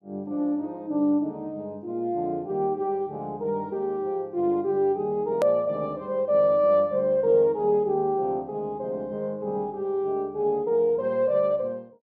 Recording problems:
click at an edit; at 5.5 s

